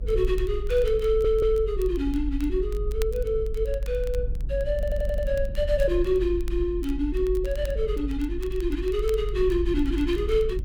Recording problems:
rumble; below 50 Hz, SNR 6 dB
crackle; vinyl, SNR 25 dB
audio stuttering; at 1 s and at 5 s

